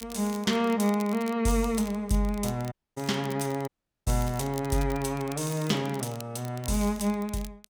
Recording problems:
crackling; vinyl, SNR 18 dB
dropout; at 2.5 s and at 3.5 s

